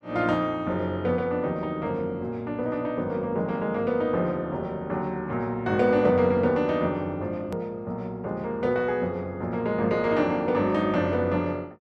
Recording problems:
click at an edit; at 7.5 s

